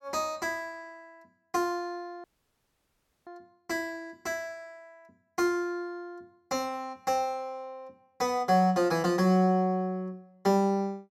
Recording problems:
audio cutting out; at 2 s for 1 s

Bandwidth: 17 kHz